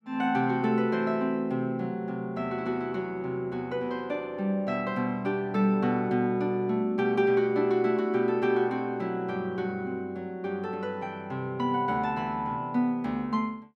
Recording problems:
none

